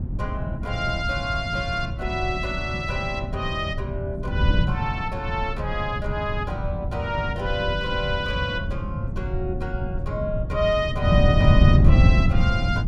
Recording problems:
wind noise; below 140 Hz, SNR -2 dB

